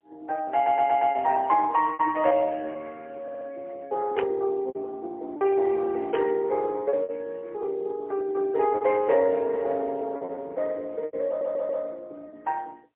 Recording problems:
phone line; 320 Hz to 3.2 kHz, AMR-NB, then MP3
lost packets; 5% of the sound replaced, filled with repeated pitch periods
stutter; at 0.5 s, at 3 s and at 11 s
static burst; at 4 s and at 6 s; peak -2 dB vs average level

